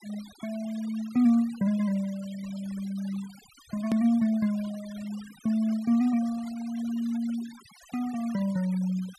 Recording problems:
denoising artefacts; signal-to-artefact ratio 21 dB
click at an edit; at 4 s

